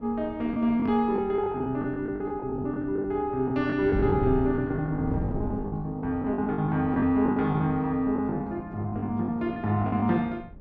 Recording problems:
wind noise; below 230 Hz, SNR 11 dB
lost packets; 13% of the sound replaced, filled with the last packet

